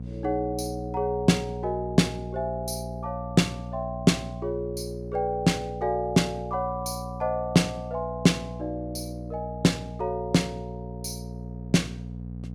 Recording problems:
electrical hum; 60 Hz, harmonics up to 540 Hz, SNR 10 dB

